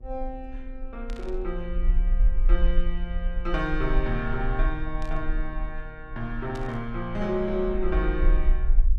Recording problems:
electrical hum; 60 Hz, harmonics up to 720 Hz, SNR 24 dB
low-frequency rumble; below 40 Hz, strongest tone 26 Hz, SNR -2 dB
burst of static; at 1 s, at 5 s and at 6.5 s; peak -9 dB vs average level

